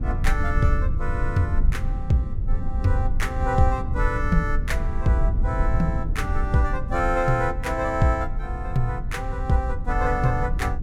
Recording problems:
rumble; below 74 Hz, SNR 2 dB

